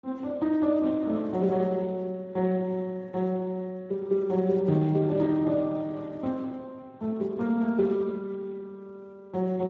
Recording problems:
lossy codec; Speex, log-spectral distance 2 dB

